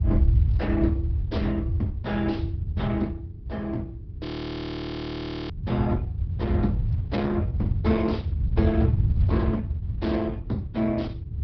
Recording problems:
treble missing; nothing above 5.2 kHz
lossy compression; Opus, log-spectral distance 2 dB
hum; 60 Hz, harmonics up to 420 Hz, SNR 23 dB
rumble; below 100 Hz, SNR -3 dB
audio freezing; at 4.5 s for 1.5 s

